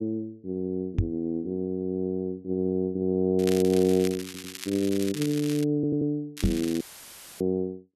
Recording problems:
microphone bump; at 1 s and at 6.5 s; peak +6 dB vs average level
crackle; from 3.5 to 5.5 s and at 6.5 s; loose cable, SNR 12 dB
stutter; at 4.5 s and at 6 s
dropout; at 7 s for 0.5 s; filled with static

